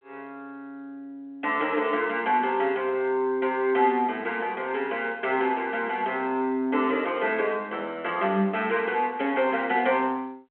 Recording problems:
phone line; 220 Hz to 3.2 kHz, G.726

